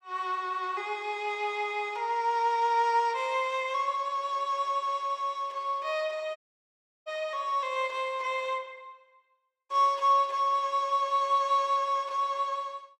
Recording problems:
dropout; at 6.5 s for 0.5 s

